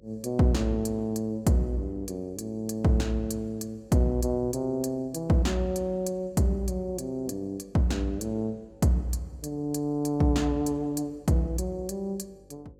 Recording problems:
hum; 50 Hz, harmonics up to 550 Hz, SNR 29 dB

